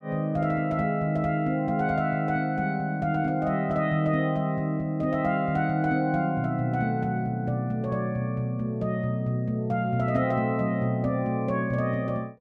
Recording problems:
none

